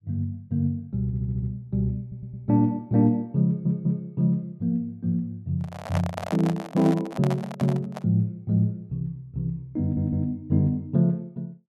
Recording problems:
audio stuttering; 4 times, first at 1 s
handling noise; from 5.5 to 8 s; peak -1 dB vs average level

